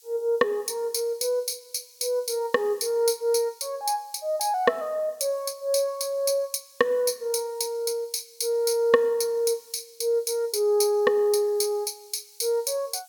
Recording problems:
hiss; SNR 27 dB

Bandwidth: 17.5 kHz